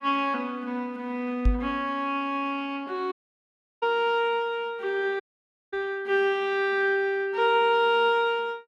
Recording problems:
microphone bump; at 1.5 s and at 5.5 s; peak +6 dB vs average level
audio cutting out; at 3 s for 0.5 s and at 5 s for 0.5 s

